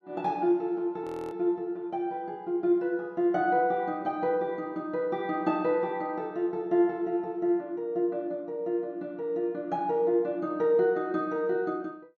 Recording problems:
frozen audio; at 1 s

